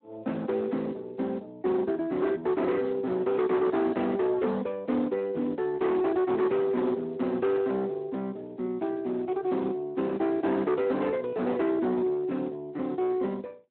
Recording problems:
telephone audio; 220 Hz to 2.6 kHz, Speex
distorted audio; hard clipping, signal-to-distortion ratio 11 dB

